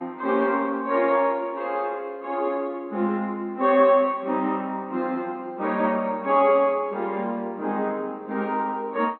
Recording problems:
lossy codec; MP2, log-spectral distance 2 dB, nothing above 3.9 kHz

